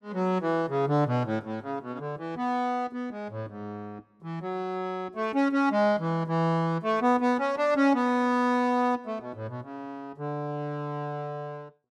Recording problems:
none

